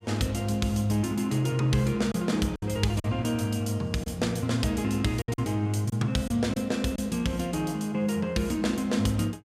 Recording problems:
lost packets; 3% of the sound replaced, filled with silence

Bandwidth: 15.5 kHz